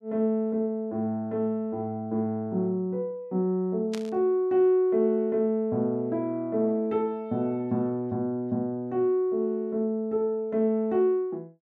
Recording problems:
static burst; at 4 s; peak -7 dB vs average level

